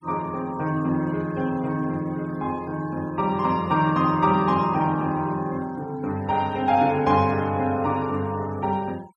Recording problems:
denoising artefacts; signal-to-artefact ratio 26 dB

